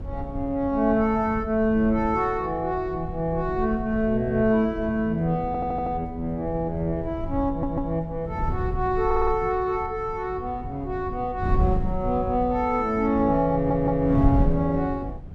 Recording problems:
wind noise; below 110 Hz, SNR 9 dB
audio stuttering; 4 times, first at 5.5 s

